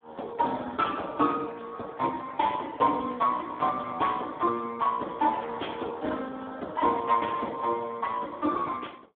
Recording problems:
phone line; 260 Hz to 3.6 kHz, Speex

